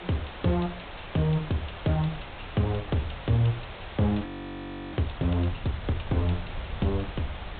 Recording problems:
treble cut off; nothing above 4 kHz
hiss; SNR 12 dB
low-frequency rumble; below 92 Hz, SNR 14 dB
audio freezing; at 4.5 s for 0.5 s

